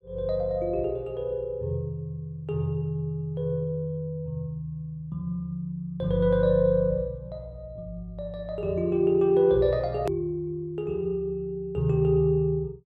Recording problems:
hard cut with a click; at 10 s

